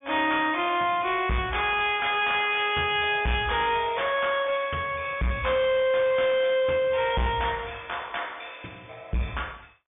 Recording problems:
low-pass filter; nothing above 3.6 kHz
distorted audio; soft clipping, signal-to-distortion ratio 10 dB

